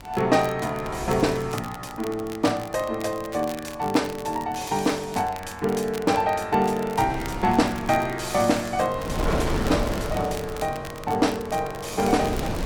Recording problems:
wind noise; below 590 Hz, SNR 8 dB
crackling; vinyl, SNR 18 dB

